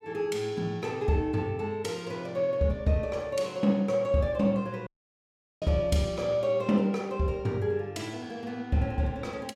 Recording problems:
dropout; at 5 s for 1 s

